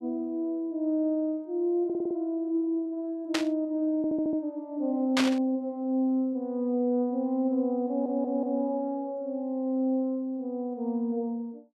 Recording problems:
audio stuttering; at 2 s, at 4 s and at 8 s
static burst; at 3.5 s and at 5 s; peak +5 dB vs average level

